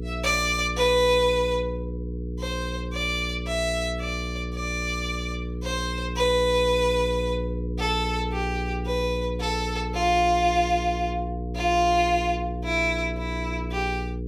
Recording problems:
electrical hum; 60 Hz, harmonics up to 480 Hz, SNR 7 dB

